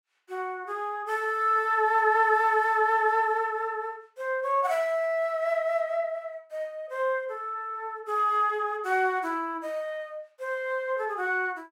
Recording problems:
none

